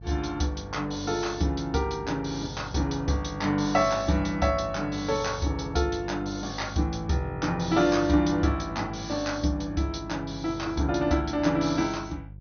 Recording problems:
low-pass filter; nothing above 6.3 kHz
hum; 50 Hz, harmonics up to 400 Hz, SNR 15 dB

